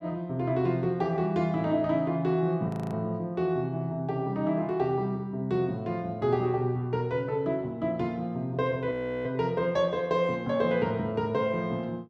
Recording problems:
audio freezing; at 2.5 s and at 9 s

